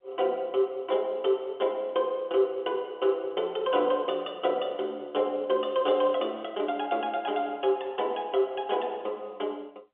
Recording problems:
phone line; 300 Hz to 3.5 kHz, G.711

